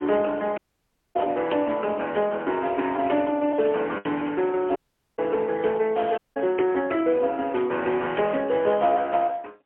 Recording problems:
telephone audio; 280 Hz to 3.2 kHz, AMR-NB, then MP3
lost packets; 3% of the sound replaced, filled with the last packet
audio cutting out; at 0.5 s for 0.5 s, at 5 s and at 6 s

